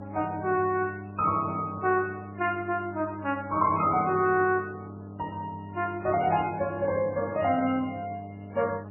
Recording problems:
lossy compression; MP3, then MP3, log-spectral distance 2 dB, nothing above 2.5 kHz
mains hum; 50 Hz, harmonics up to 1 kHz, SNR 14 dB

